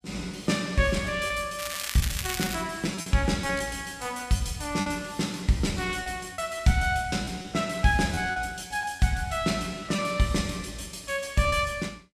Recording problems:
packet loss; 6% of the sound replaced, filled with repeated pitch periods
crackle; at 1.5 s; loose cable, SNR 5 dB

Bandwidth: 14.5 kHz